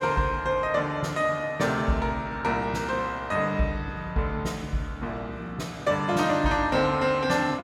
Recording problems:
none

